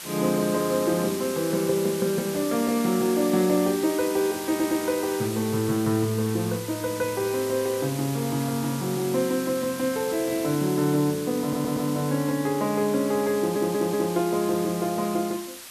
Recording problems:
hiss; slope +1 dB per octave, SNR 11 dB
stutter; at 4.5 s, at 11 s and at 13 s

